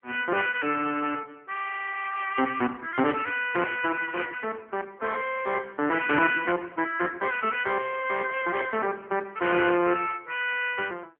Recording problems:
phone line; 220 Hz to 3.1 kHz, AMR-NB

